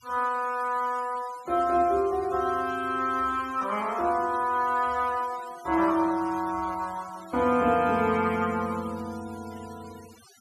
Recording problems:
denoising artefacts; signal-to-artefact ratio 23 dB

